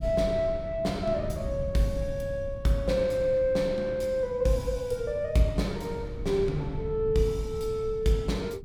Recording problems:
low-frequency rumble; below 130 Hz, SNR 11 dB

